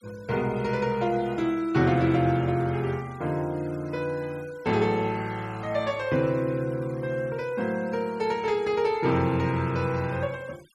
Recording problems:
noise reduction artefacts; signal-to-artefact ratio 24 dB

